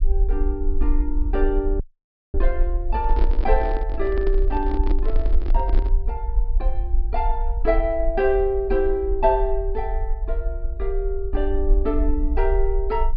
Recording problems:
treble missing; nothing above 5.5 kHz
rumble; below 44 Hz, SNR 0 dB
audio cutting out; at 2 s for 0.5 s
handling noise; from 3 to 6 s; peak -2 dB vs average level

